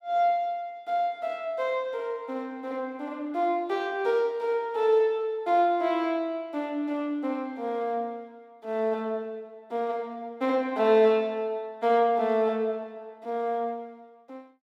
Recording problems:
none

